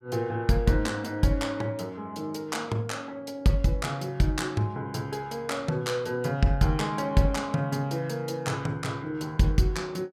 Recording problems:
none

